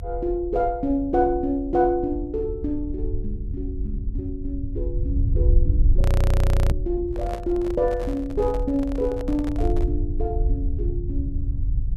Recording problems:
rumble; below 78 Hz, SNR 1 dB
audio freezing; at 6 s for 0.5 s
microphone handling noise; from 7 to 10 s; peak -4 dB vs average level

